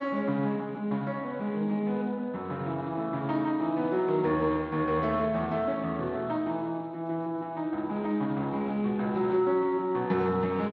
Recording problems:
codec artefacts; Speex, log-spectral distance 2 dB

